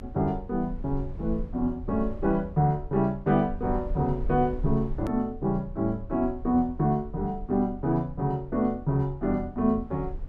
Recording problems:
low-frequency rumble; below 62 Hz, SNR 13 dB
edit click; at 5 s

